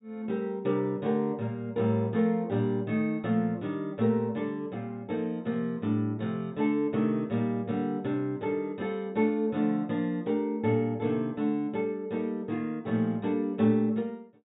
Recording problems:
treble missing; nothing above 4 kHz

